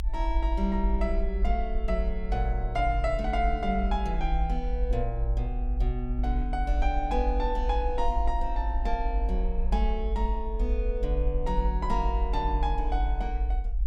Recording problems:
low-frequency rumble; below 52 Hz, SNR -1 dB

